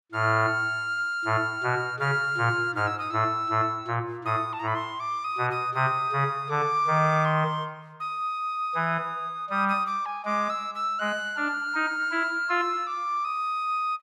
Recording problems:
none

